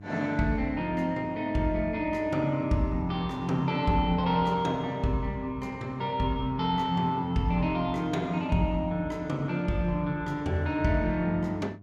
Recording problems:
hum; 50 Hz, harmonics up to 700 Hz, SNR 21 dB

